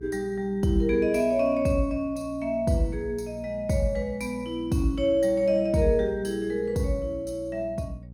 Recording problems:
electrical hum; 60 Hz, harmonics up to 480 Hz, SNR 19 dB

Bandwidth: 17 kHz